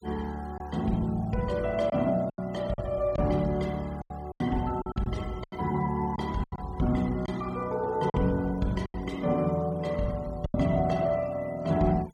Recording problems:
noise reduction artefacts; signal-to-artefact ratio 23 dB
packet loss; 7% of the sound replaced, filled with silence

